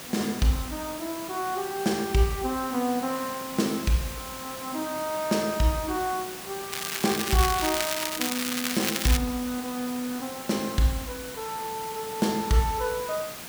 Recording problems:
hiss; slope -2 dB per octave, SNR 9 dB
crackling; from 6.5 to 9 s; loose cable, SNR 1 dB

